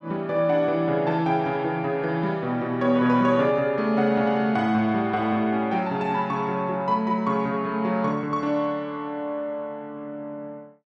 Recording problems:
none

